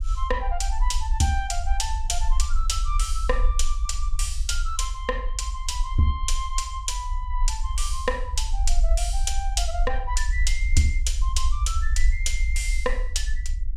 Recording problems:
rumble; below 50 Hz, strongest tone 22 Hz, SNR 0 dB

